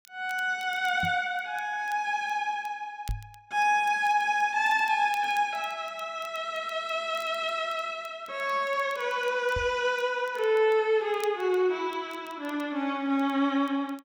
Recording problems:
crackling; vinyl, SNR 26 dB
knock on the microphone; at 1 s, at 3 s and at 9.5 s; peak -2 dB vs average level

